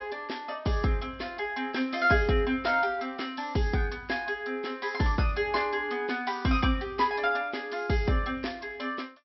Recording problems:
low-pass filter; nothing above 5.6 kHz

